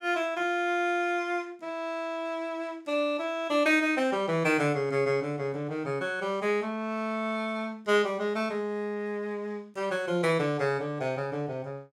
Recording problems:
none

